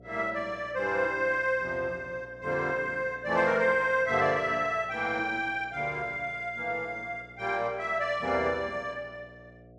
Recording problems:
hum; 60 Hz, harmonics up to 720 Hz, SNR 23 dB

